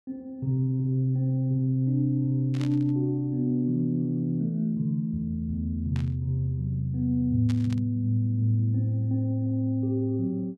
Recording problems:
static burst; at 2.5 s, at 6 s and at 7.5 s; peak -11 dB vs average level

